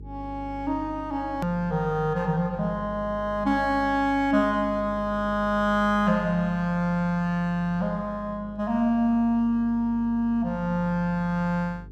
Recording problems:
hum; 50 Hz, harmonics up to 450 Hz, SNR 17 dB
click at an edit; at 1.5 s

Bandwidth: 15 kHz